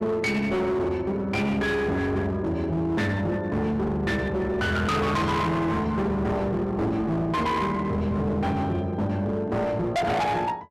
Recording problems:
distortion; hard clipping, signal-to-distortion ratio 7 dB

